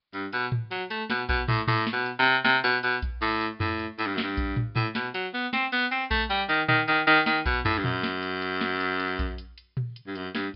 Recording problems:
low-pass filter; nothing above 4.9 kHz
codec artefacts; G.722, then G.722, log-spectral distance 4 dB

